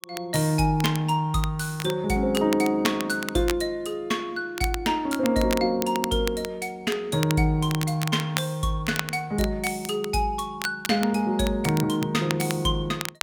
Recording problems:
crackling; vinyl, SNR 11 dB

